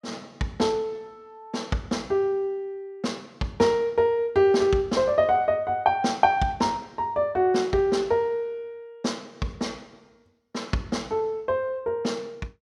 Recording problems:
none

